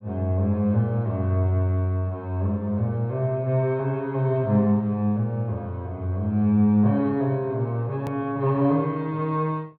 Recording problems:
treble cut off; nothing above 4.5 kHz
edit click; at 8 s

